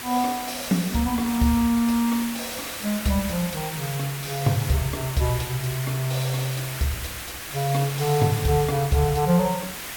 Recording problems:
hiss; SNR 8 dB

